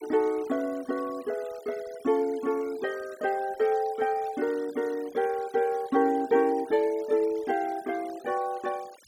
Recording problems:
denoising artefacts; signal-to-artefact ratio 22 dB

